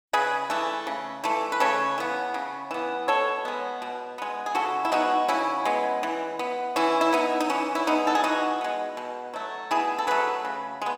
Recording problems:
none

